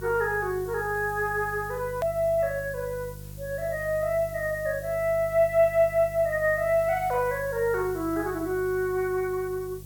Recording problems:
hum; 50 Hz, harmonics up to 550 Hz, SNR 16 dB
hiss; slope +6 dB per octave, SNR 20 dB
hard cut with a click; at 2 s

